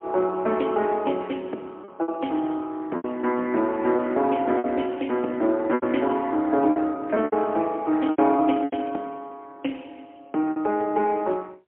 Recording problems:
phone line; 240 Hz to 3.1 kHz, AMR-NB, then MP3
packet loss; 7% of the sound replaced, filled with repeated pitch periods

